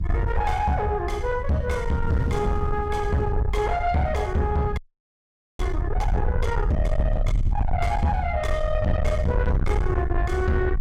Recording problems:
distorted audio; soft clipping, signal-to-distortion ratio 7 dB
low-frequency rumble; below 86 Hz, SNR 2 dB
wind noise; below 170 Hz, SNR 12 dB
audio freezing; at 5 s for 1 s

